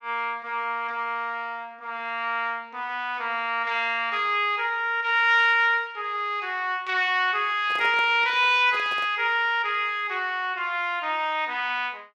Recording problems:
microphone handling noise; from 7.5 to 9 s; peak -11 dB vs average level

